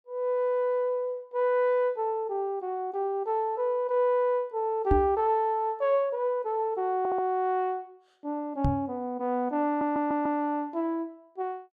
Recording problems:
knock on the microphone; at 5 s and at 8.5 s; peak +5 dB vs average level
audio stuttering; at 7 s and at 9.5 s

